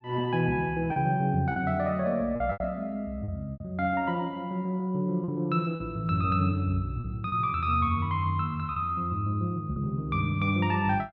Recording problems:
lost packets; 5% of the sound replaced, filled with repeated pitch periods

